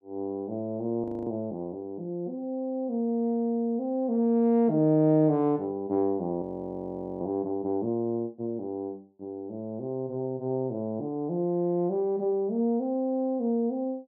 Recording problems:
frozen audio; at 1 s and at 6.5 s for 1 s

